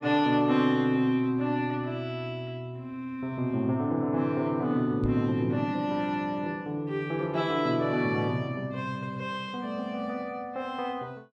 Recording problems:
knock on the microphone; at 5 s; peak +2 dB vs average level

